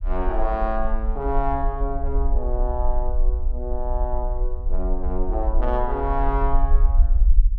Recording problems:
low-frequency rumble; below 48 Hz, strongest tone 24 Hz, SNR -2 dB

